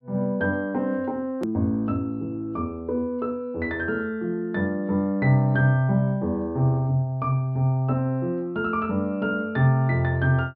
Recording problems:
treble cut off; nothing above 5.5 kHz
click at an edit; at 1.5 s

